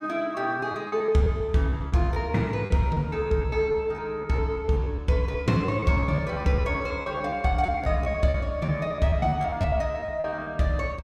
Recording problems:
lost packets; 15% of the sound replaced, filled with repeated pitch periods

